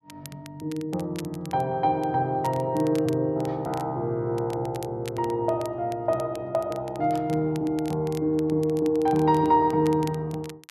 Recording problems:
crackling; vinyl, SNR 22 dB

